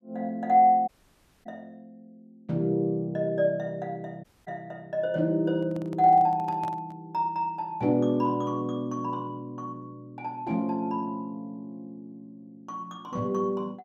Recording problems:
audio cutting out; at 1 s for 0.5 s and at 4 s
handling noise; from 5.5 to 7 s; peak -11 dB vs average level

